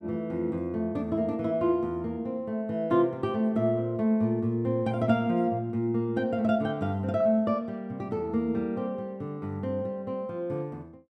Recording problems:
none

